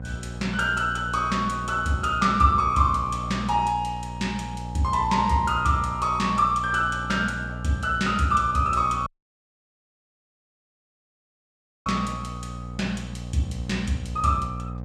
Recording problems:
hum; 60 Hz, harmonics up to 780 Hz, SNR 11 dB
audio cutting out; at 9 s for 3 s

